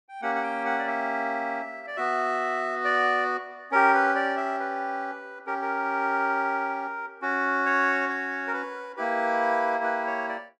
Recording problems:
none

